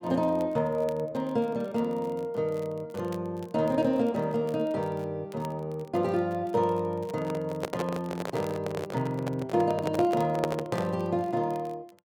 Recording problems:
crackle; vinyl, SNR 27 dB
handling noise; from 7 to 11 s; peak +3 dB vs average level

